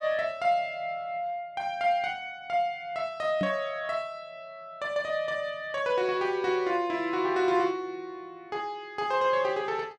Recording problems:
microphone thump; at 3.5 s; peak +1 dB vs average level

